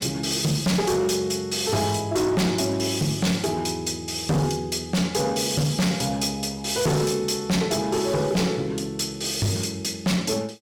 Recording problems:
distorted audio; hard clipping, uneven, signal-to-distortion ratio 6 dB

